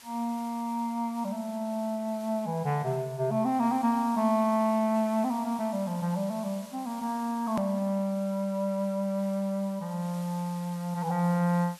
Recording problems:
hiss; slope +1 dB per octave, SNR 21 dB
click at an edit; at 7.5 s

